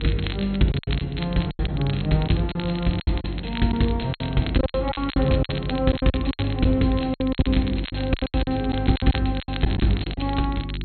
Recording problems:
low-pass filter; nothing above 4.2 kHz
electrical hum; 50 Hz, harmonics up to 400 Hz, SNR 9 dB
crackle; vinyl, SNR 13 dB
packet loss; 15% of the sound replaced, filled with silence

